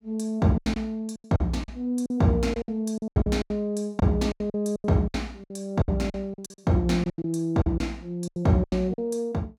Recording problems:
packet loss; 16% of the sound replaced, filled with silence

